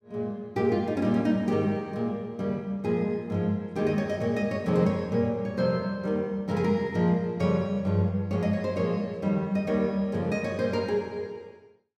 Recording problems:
none

